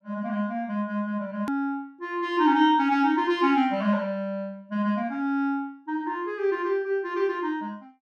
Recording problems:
edit click; at 1.5 s

